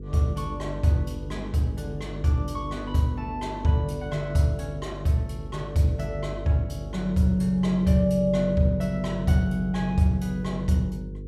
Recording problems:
hum; 50 Hz, harmonics up to 500 Hz, SNR 12 dB

